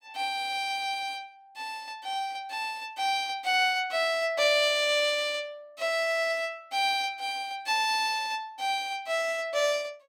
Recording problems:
none

